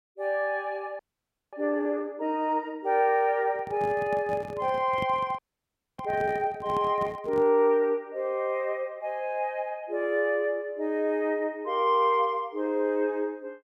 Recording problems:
frozen audio; at 1 s for 0.5 s and at 5.5 s for 0.5 s
microphone handling noise; from 3.5 to 7.5 s; peak -5 dB vs average level

